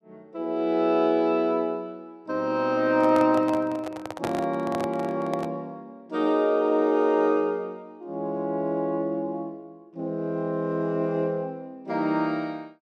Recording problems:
handling noise; from 3 to 5.5 s; peak -1 dB vs average level

